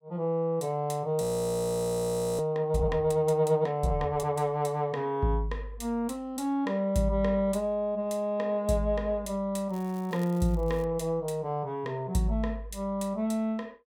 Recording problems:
audio freezing; at 1 s for 1 s
crackle; from 9.5 to 11 s; loose cable, SNR 25 dB

